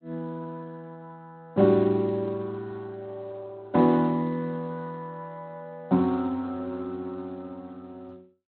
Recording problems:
lossy codec; Speex, log-spectral distance 2 dB, nothing above 4.1 kHz

